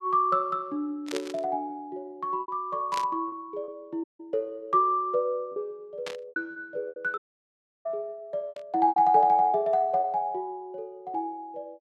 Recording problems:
packet loss; 6% of the sound replaced, filled with repeated pitch periods
burst of static; 4 times, first at 1 s; peak -3 dB vs average level
dropout; at 4 s and at 7 s for 0.5 s

